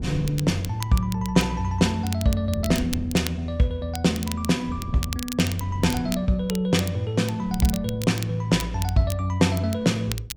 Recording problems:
wind on the microphone; below 190 Hz, SNR 13 dB
crackle; vinyl, SNR 13 dB

